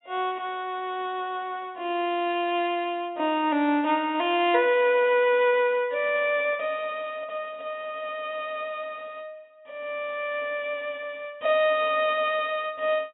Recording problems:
treble missing; nothing above 4 kHz

